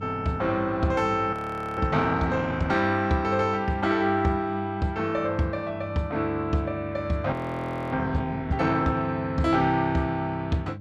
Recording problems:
hum; 50 Hz, harmonics up to 500 Hz, SNR 14 dB
audio freezing; at 1.5 s and at 7.5 s for 0.5 s

